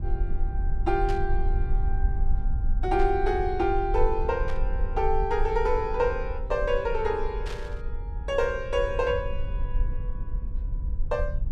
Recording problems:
rumble; below 48 Hz, strongest tone 24 Hz, SNR 4 dB
burst of static; 4 times, first at 1 s; peak -9 dB vs average level

